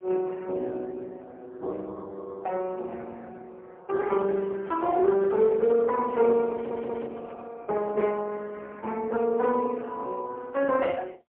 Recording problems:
telephone audio; 280 Hz to 3.6 kHz, AMR-NB, then MP3
handling noise; from 4 to 7.5 s; peak -10 dB vs average level
stutter; at 6.5 s

